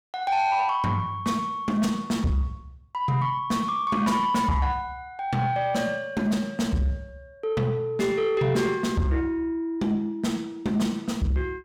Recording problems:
distortion; soft clipping, signal-to-distortion ratio 11 dB

